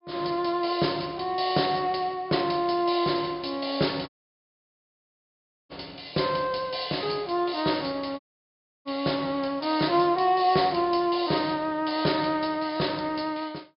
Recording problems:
treble missing; nothing above 5.5 kHz
dropout; at 4 s for 1.5 s and at 8 s for 0.5 s

